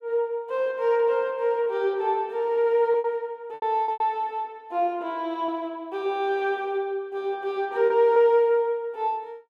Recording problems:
packet loss; 4% of the sound replaced, filled with repeated pitch periods

